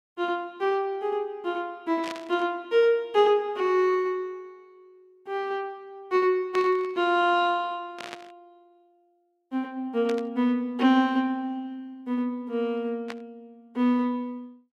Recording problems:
static burst; 5 times, first at 2 s; peak -6 dB vs average level

